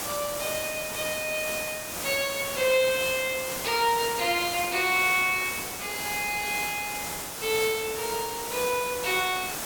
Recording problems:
background hiss; slope -3 dB per octave, SNR 5 dB

